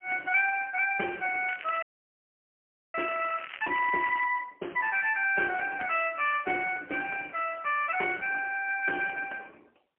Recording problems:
telephone audio; 260 Hz to 3 kHz, AMR-NB, then MP3
crackle; from 1.5 to 4 s; loose cable, SNR 16 dB
frozen audio; at 2 s for 1 s

